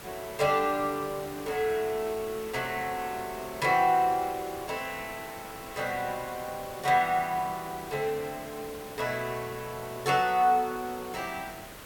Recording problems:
background hiss; slope -4 dB per octave, SNR 14 dB

